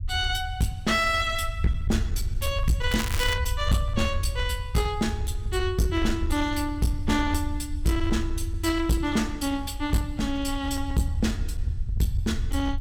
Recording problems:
distortion; hard clipping, uneven, signal-to-distortion ratio 11 dB
low-frequency rumble; below 84 Hz, SNR 5 dB
crackle; at 3 s; loose cable, SNR 7 dB

